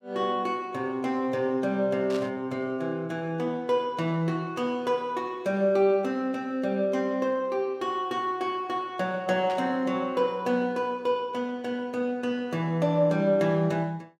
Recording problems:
static burst; at 2 s and at 9.5 s; peak -9 dB vs average level

